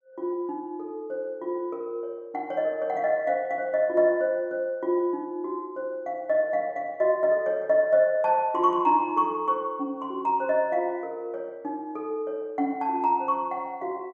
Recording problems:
none

